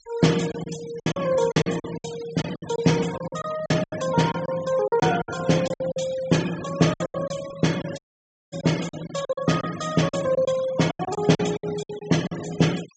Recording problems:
treble cut off; nothing above 8 kHz
noise reduction artefacts; signal-to-artefact ratio 15 dB
lost packets; 14% of the sound replaced, filled with silence
dropout; at 8 s for 0.5 s

